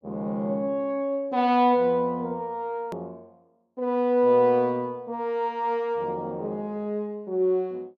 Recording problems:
hard cut with a click; at 3 s

